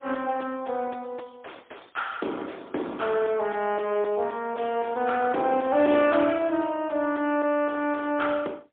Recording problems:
telephone audio; 260 Hz to 3.5 kHz, AMR-NB, then MP3
distortion; soft clipping, signal-to-distortion ratio 11 dB

